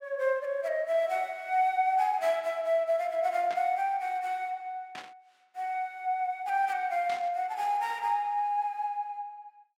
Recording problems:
burst of static; at 3.5 s, at 5 s and at 7 s; peak -9 dB vs average level

